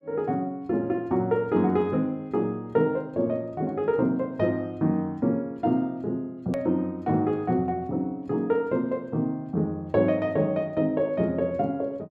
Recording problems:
edit click; at 6.5 s

